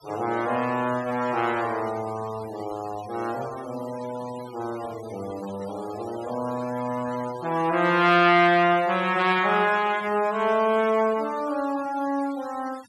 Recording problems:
denoising artefacts; signal-to-artefact ratio 19 dB

